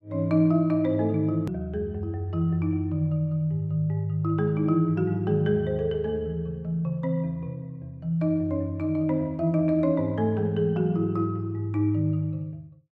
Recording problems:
hard cut with a click; at 1.5 s

